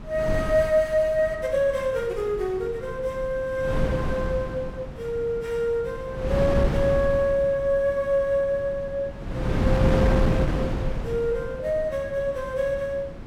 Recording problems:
wind noise; below 290 Hz, SNR 4 dB

